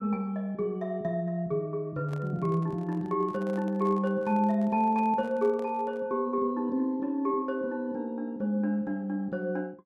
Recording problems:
microphone handling noise; from 2 to 6 s; peak -12 dB vs average level

